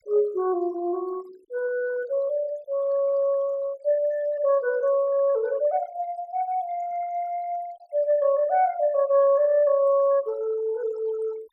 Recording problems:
denoising artefacts; signal-to-artefact ratio 25 dB

